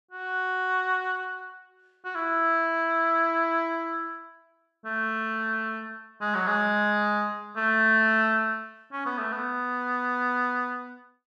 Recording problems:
none

